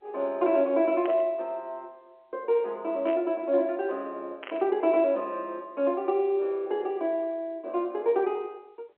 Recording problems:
telephone audio; 300 Hz to 3.5 kHz, G.711
static burst; at 1 s, at 3 s and at 4.5 s; peak -9 dB vs average level

